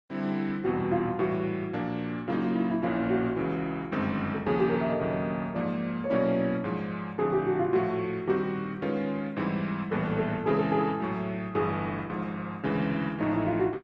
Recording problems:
lossy codec; Opus, log-spectral distance 2 dB

